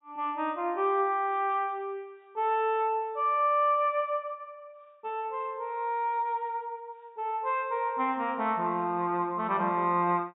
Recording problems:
treble missing; nothing above 4 kHz

